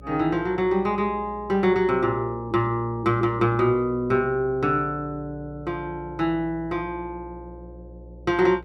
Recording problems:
hum; 60 Hz, harmonics up to 600 Hz, SNR 20 dB

